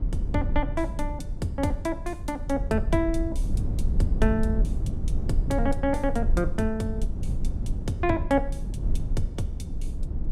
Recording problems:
low-frequency rumble; below 74 Hz, SNR 2 dB

